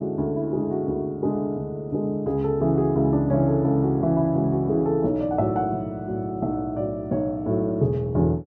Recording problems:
none

